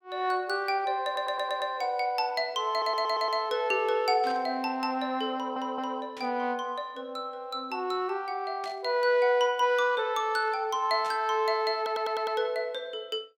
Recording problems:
stutter; 4 times, first at 1 s
burst of static; 4 times, first at 4 s; peak -11 dB vs average level

